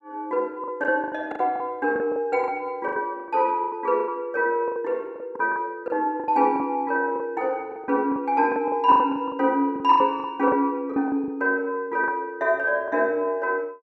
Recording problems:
lost packets; 14% of the sound replaced, filled with the last packet

